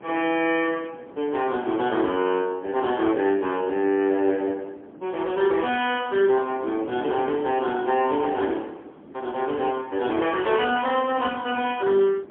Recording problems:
telephone audio; 240 Hz to 3.3 kHz, AMR-NB, then MP3
wind on the microphone; below 470 Hz, SNR 20 dB

